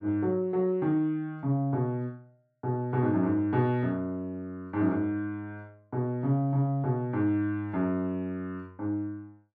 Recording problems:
none

